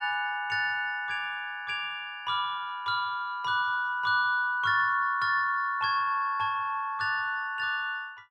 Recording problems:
none

